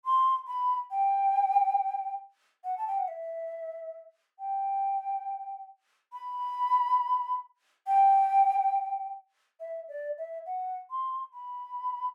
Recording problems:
none

